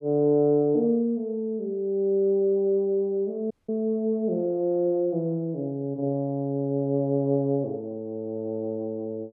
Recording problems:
audio cutting out; at 3.5 s

